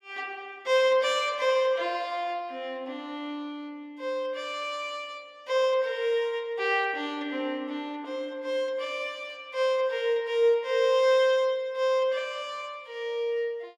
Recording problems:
none

